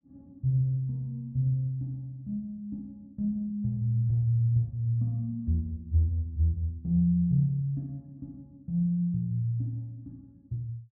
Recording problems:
none

